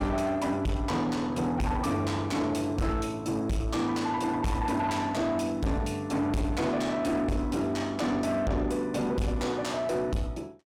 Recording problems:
distortion; soft clipping, signal-to-distortion ratio 7 dB

